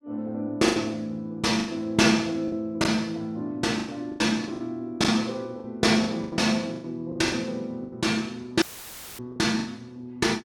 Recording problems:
packet loss; 11% of the sound replaced, filled with the last packet
audio cutting out; at 8.5 s for 0.5 s; filled with static

